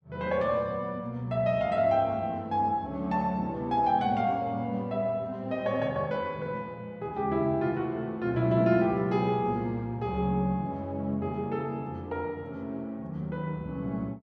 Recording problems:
none

